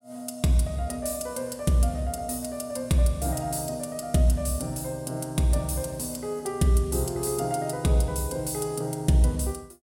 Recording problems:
none

